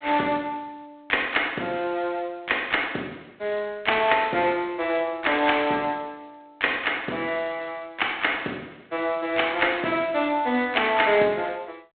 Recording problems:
phone line; 220 Hz to 3.7 kHz, G.726

